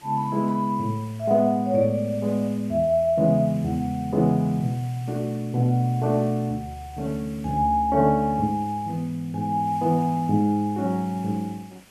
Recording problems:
background hiss; SNR 25 dB

